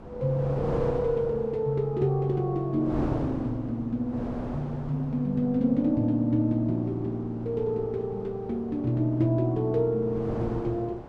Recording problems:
wind noise; below 630 Hz, SNR 11 dB

